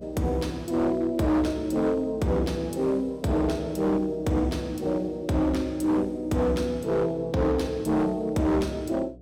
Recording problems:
distortion; hard clipping, signal-to-distortion ratio 11 dB
hum; 60 Hz, harmonics up to 720 Hz, SNR 23 dB

